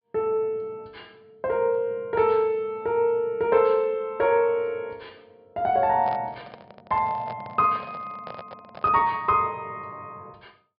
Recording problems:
low-pass filter; nothing above 5.5 kHz
handling noise; from 6 to 9 s; peak -10 dB vs average level

